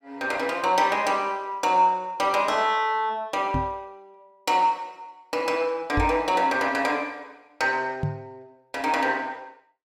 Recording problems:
microphone bump; at 3.5 s, at 6 s and at 8 s; peak 0 dB vs average level

